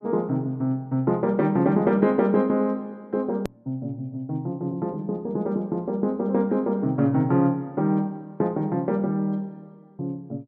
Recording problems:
click at an edit; at 3.5 s

